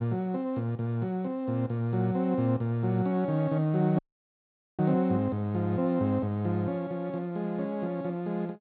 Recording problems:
low-pass filter; nothing above 4.4 kHz
dropout; at 4 s for 1 s

